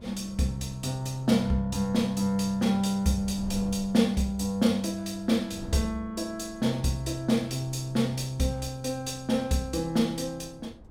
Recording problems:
wind on the microphone; below 200 Hz, SNR 20 dB

